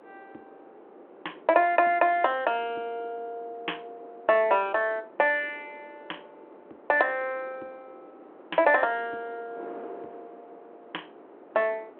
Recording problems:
telephone audio; 280 Hz to 3.3 kHz, G.726
wind on the microphone; below 720 Hz, SNR 22 dB

